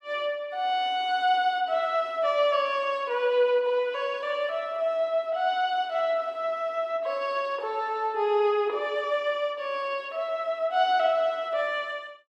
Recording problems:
none

